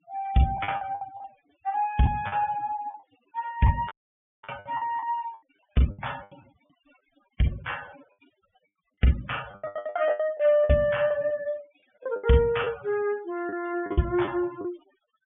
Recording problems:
low-pass filter; nothing above 3.4 kHz
denoising artefacts; signal-to-artefact ratio 20 dB
lost packets; 13% of the sound replaced, filled with the last packet
audio cutting out; at 4 s for 0.5 s

